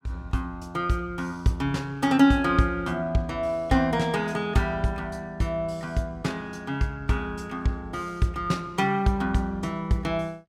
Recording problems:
none

